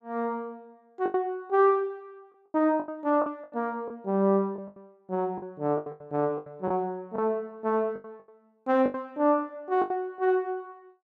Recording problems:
lost packets; 11% of the sound replaced, filled with the last packet

